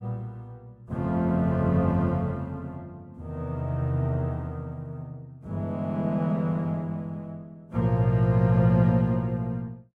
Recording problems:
none

